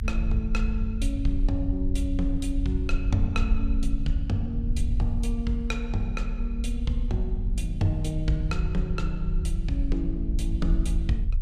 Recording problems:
low-frequency rumble; below 56 Hz, strongest tone 34 Hz, SNR -1 dB

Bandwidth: 15 kHz